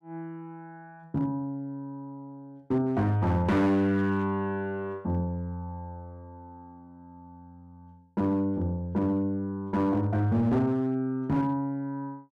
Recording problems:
distortion; hard clipping, signal-to-distortion ratio 11 dB

